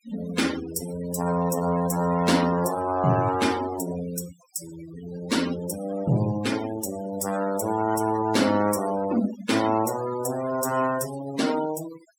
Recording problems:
noise reduction artefacts; signal-to-artefact ratio 13 dB

